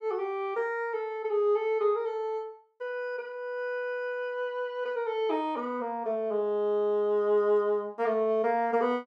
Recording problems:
none

